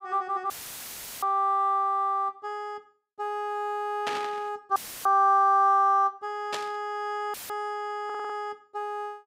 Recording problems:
audio cutting out; at 0.5 s for 0.5 s, at 5 s and at 7.5 s; filled with static
static burst; at 1 s, at 4 s and at 6.5 s; peak -2 dB vs average level
stutter; at 8 s

